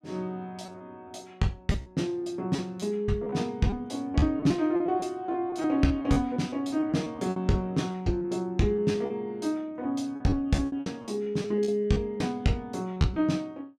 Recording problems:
packet loss; 11% of the sound replaced, filled with repeated pitch periods

